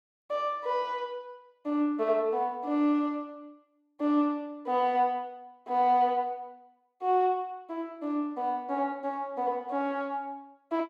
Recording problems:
none

